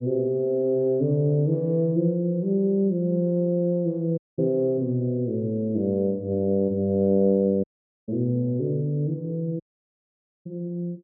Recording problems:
dropout; at 4 s, at 7.5 s and at 9.5 s for 1 s

